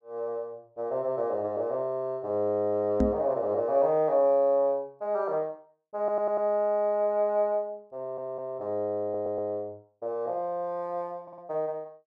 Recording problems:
knock on the microphone; at 3 s; peak +6 dB vs average level
audio stuttering; 4 times, first at 6 s

